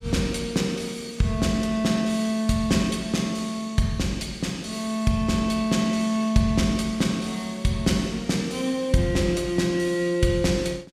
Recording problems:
none

